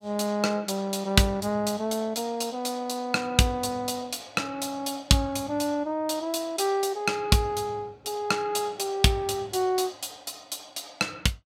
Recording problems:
none

